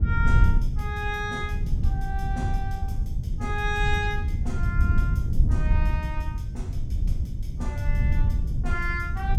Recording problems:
low-frequency rumble; below 92 Hz, SNR -6 dB

